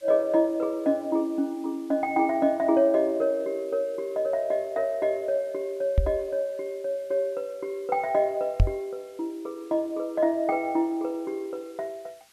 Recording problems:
background hiss; slope +1 dB per octave, SNR 29 dB
microphone bump; at 6 s and at 8.5 s; peak +8 dB vs average level

